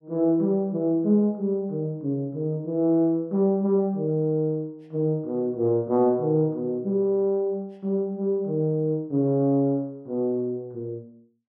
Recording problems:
none

